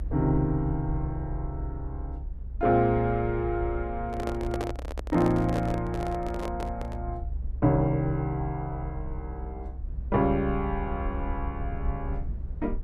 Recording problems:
low-frequency rumble; below 66 Hz, SNR 8 dB
handling noise; from 4 to 7 s; peak -1 dB vs average level

